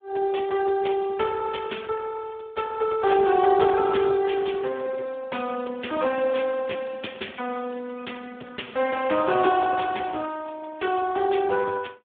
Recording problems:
phone line; 260 Hz to 3.5 kHz, Speex

